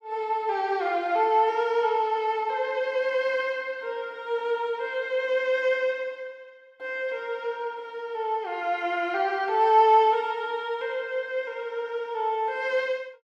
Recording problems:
none

